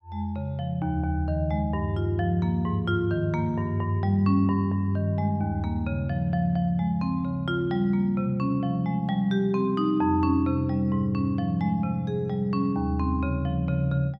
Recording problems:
none

